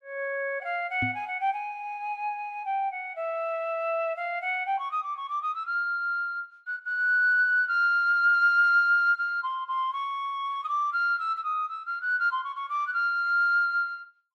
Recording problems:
knock on the microphone; at 1 s; peak -3 dB vs average level

